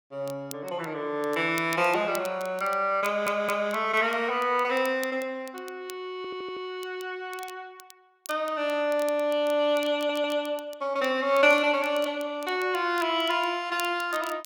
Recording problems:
crackle; vinyl, SNR 20 dB
stutter; at 3 s, at 6 s and at 10 s

